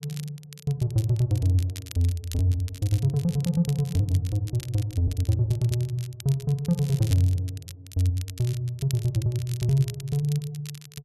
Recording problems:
crackling; vinyl, SNR 18 dB

